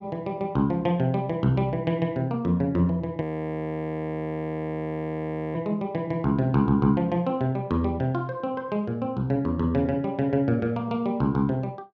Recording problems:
audio freezing; at 3 s for 2.5 s

